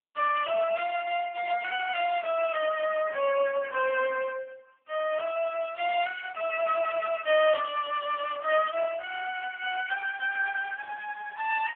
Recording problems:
telephone audio; 220 Hz to 3.1 kHz, AMR-NB

